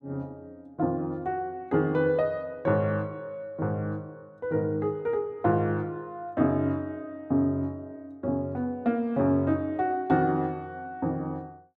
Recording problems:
none

